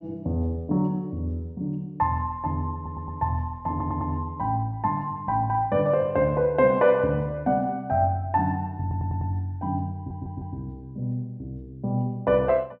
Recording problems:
stutter; 4 times, first at 2.5 s

